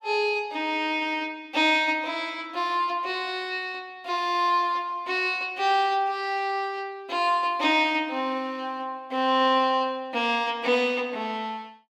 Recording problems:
none

